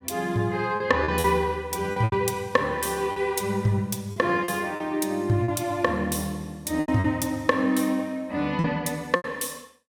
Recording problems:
packet loss; 7% of the sound replaced, filled with repeated pitch periods

